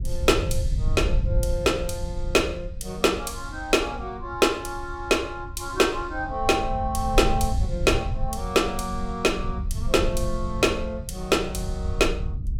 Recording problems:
low-frequency rumble; below 84 Hz, SNR 6 dB

